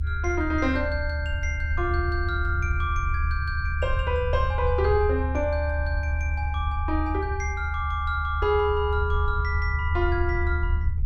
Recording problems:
low-frequency rumble; below 76 Hz, strongest tone 74 Hz, SNR 1 dB

